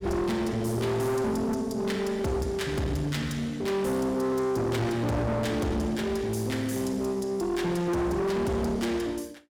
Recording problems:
distortion; hard clipping, uneven, signal-to-distortion ratio 6 dB

